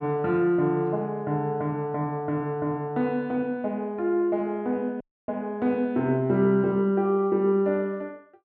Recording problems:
audio cutting out; at 5 s

